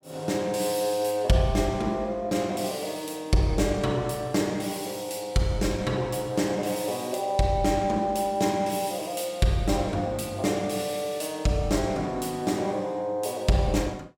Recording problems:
none

